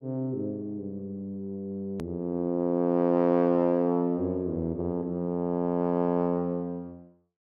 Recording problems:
edit click; at 2 s

